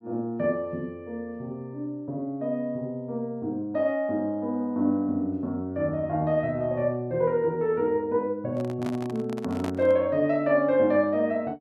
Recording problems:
microphone handling noise; from 8.5 to 10 s; peak -4 dB vs average level

